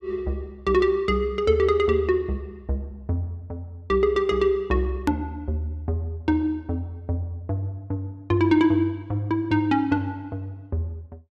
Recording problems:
click at an edit; at 5 s

